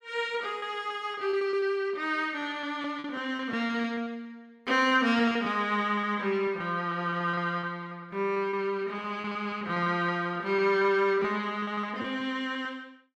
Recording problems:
lost packets; 10% of the sound replaced, filled with repeated pitch periods

